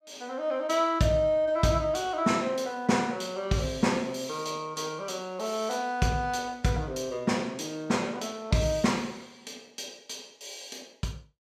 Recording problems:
none

